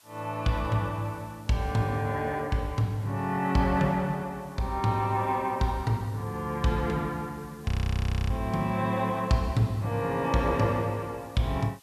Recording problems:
hiss; slope +1 dB per octave, SNR 27 dB
frozen audio; at 7.5 s for 0.5 s

